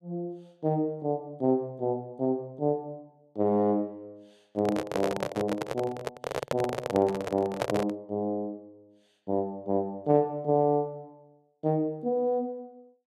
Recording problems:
microphone handling noise; from 4.5 to 8 s; peak +4 dB vs average level

